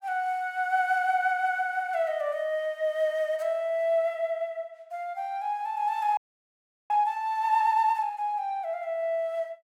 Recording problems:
frozen audio; at 6 s for 0.5 s

